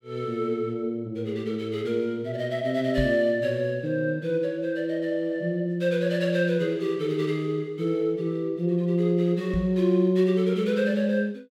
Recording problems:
knock on the microphone; at 3 s and at 9.5 s; peak +2 dB vs average level

